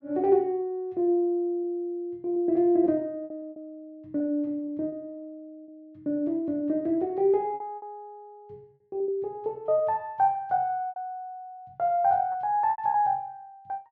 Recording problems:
packet loss; 6% of the sound replaced, filled with repeated pitch periods

